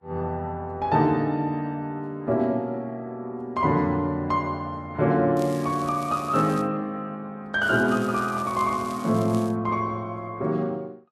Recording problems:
lossy compression; Vorbis, log-spectral distance 2 dB
crackle; from 5.5 to 6.5 s and from 7.5 to 9.5 s; loose cable, SNR 20 dB

